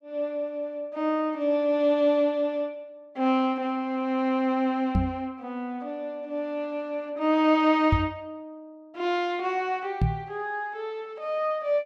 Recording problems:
knock on the microphone; at 5 s, at 8 s and at 10 s; peak +6 dB vs average level

